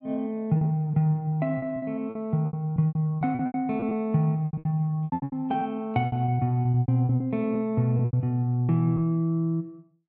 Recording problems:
packet loss; 15% of the sound replaced, filled with repeated pitch periods

